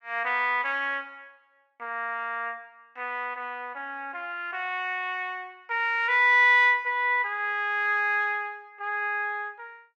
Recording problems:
none

